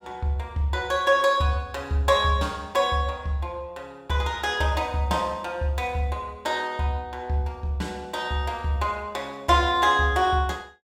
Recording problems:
none

